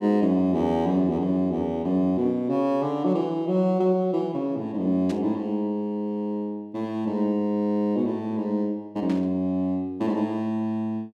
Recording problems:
burst of static; at 5 s and at 9 s; peak -12 dB vs average level

